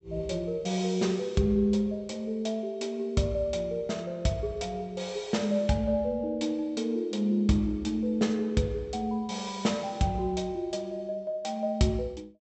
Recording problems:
low-pass filter; nothing above 8 kHz

